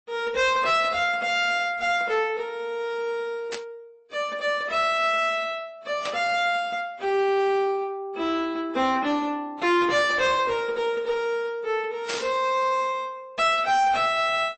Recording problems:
codec artefacts; MP3, then AAC, log-spectral distance 2 dB, nothing above 7.6 kHz
distorted audio; soft clipping, signal-to-distortion ratio 10 dB
burst of static; at 3.5 s, at 6 s and at 12 s; peak -3 dB vs average level

